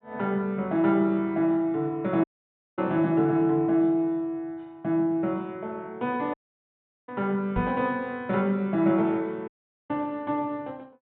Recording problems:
treble missing; nothing above 4 kHz
audio cutting out; at 2 s for 0.5 s, at 6.5 s for 0.5 s and at 9.5 s
knock on the microphone; at 7.5 s; peak +1 dB vs average level

